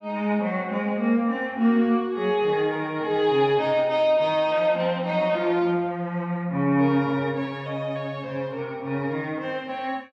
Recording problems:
none

